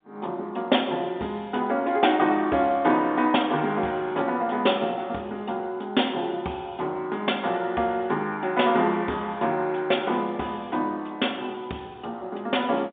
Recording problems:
phone line; 170 Hz to 3.7 kHz, G.711

